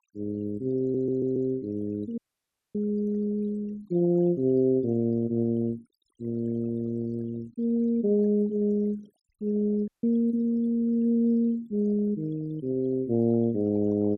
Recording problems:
noise reduction artefacts; signal-to-artefact ratio 26 dB
audio stuttering; at 1 s
dropout; at 2 s for 0.5 s and at 10 s

